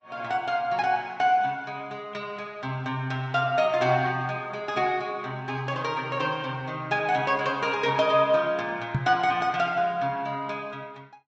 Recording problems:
low-pass filter; nothing above 8 kHz
lossy compression; Vorbis, log-spectral distance 2 dB
microphone bump; at 9 s; peak +4 dB vs average level

